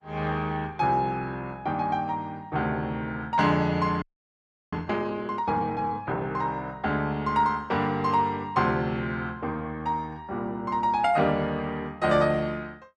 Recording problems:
codec artefacts; Opus, log-spectral distance 2 dB, nothing above 11.6 kHz
audio freezing; at 4 s for 0.5 s

